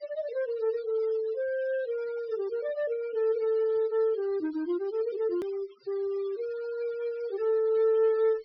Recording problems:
low-pass filter; nothing above 5.5 kHz
noise reduction artefacts; signal-to-artefact ratio 22 dB
click at an edit; at 5.5 s

